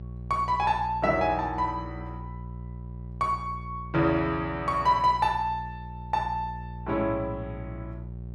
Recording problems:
hum; 60 Hz, harmonics up to 600 Hz, SNR 12 dB

